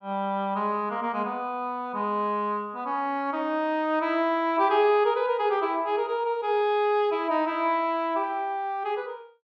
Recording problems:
none

